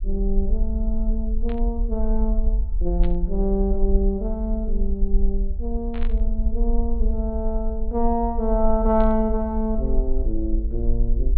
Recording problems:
treble cut off; nothing above 4.3 kHz
low-frequency rumble; below 46 Hz, strongest tone 20 Hz, SNR 0 dB
static burst; 4 times, first at 1.5 s; peak -11 dB vs average level

